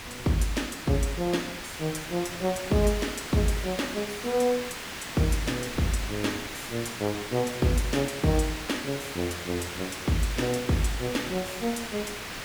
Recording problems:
background hiss; SNR 7 dB
wind noise; below 270 Hz, SNR 22 dB

